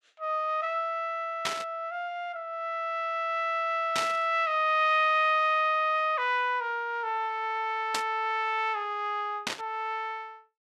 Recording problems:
burst of static; 4 times, first at 1.5 s; peak +3 dB vs average level

